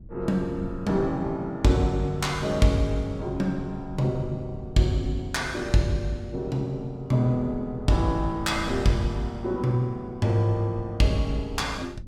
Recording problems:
rumble; below 130 Hz, SNR 15 dB

